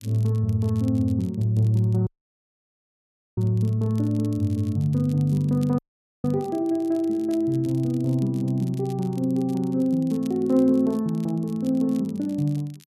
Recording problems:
crackling; vinyl, SNR 28 dB
dropout; at 2 s for 1.5 s and at 6 s

